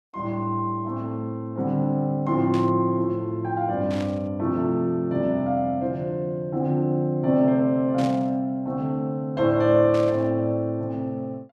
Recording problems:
static burst; 4 times, first at 2.5 s; peak -10 dB vs average level

